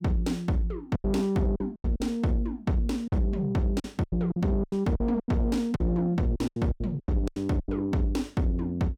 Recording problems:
distortion; soft clipping, signal-to-distortion ratio 11 dB
packet loss; 13% of the sound replaced, filled with silence

